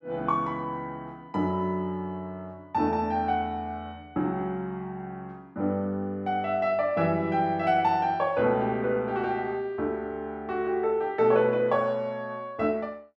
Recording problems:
none

